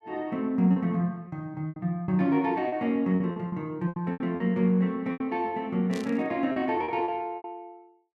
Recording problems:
packet loss; 11% of the sound replaced, filled with repeated pitch periods
static burst; at 6 s; peak -10 dB vs average level

